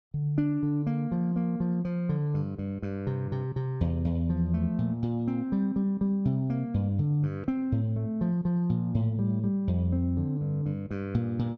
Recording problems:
none

